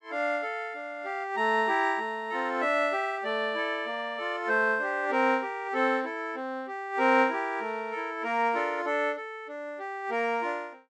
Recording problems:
none

